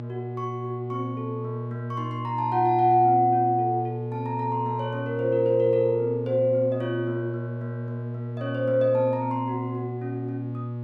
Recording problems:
hum; 60 Hz, harmonics up to 840 Hz, SNR 8 dB

